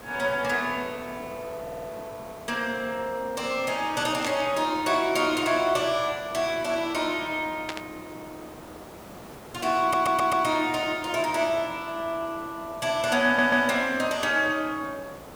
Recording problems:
background hiss; slope -7 dB per octave, SNR 18 dB
audio stuttering; at 1.5 s, at 10 s and at 13 s
static burst; at 4 s and at 7.5 s; peak -2 dB vs average level

